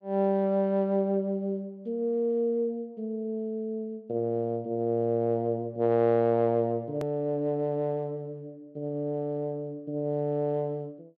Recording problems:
hard cut with a click; at 7 s

